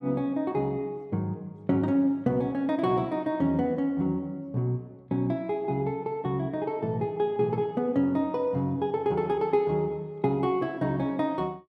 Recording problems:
none

